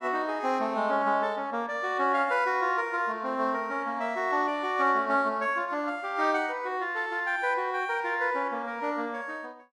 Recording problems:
none

